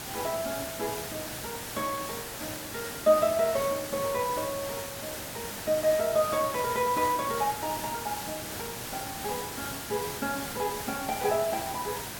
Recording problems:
hiss; slope -2 dB per octave, SNR 6 dB

